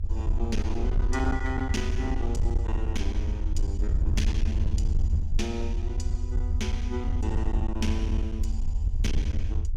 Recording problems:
distortion; hard clipping, uneven, signal-to-distortion ratio 10 dB
low-frequency rumble; below 78 Hz, SNR -5 dB

